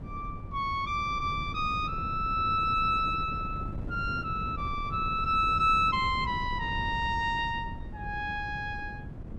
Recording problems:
wind on the microphone; below 180 Hz, SNR 10 dB

